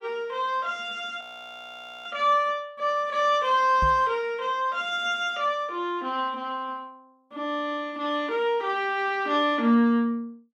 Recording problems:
frozen audio; at 1 s for 1 s
microphone thump; at 4 s; peak -1 dB vs average level

